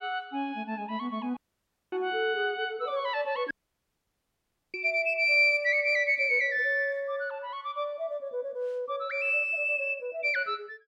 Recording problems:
dropout; at 1.5 s for 0.5 s and at 3.5 s for 1 s

